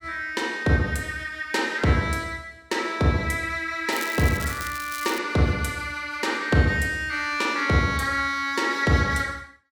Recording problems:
crackle; from 4 to 5 s; loose cable, SNR 12 dB

